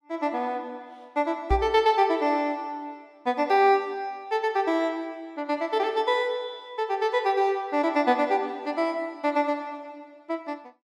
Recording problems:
microphone bump; at 1.5 s; peak +2 dB vs average level

